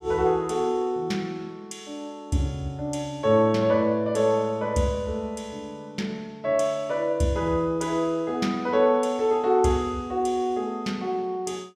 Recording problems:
none

